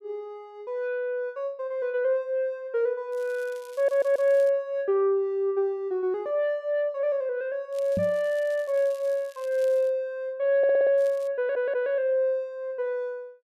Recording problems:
crackle; from 3 to 4.5 s, from 7.5 to 10 s and at 11 s; loose cable, SNR 27 dB
audio stuttering; at 4 s and at 11 s
microphone bump; at 8 s; peak -1 dB vs average level

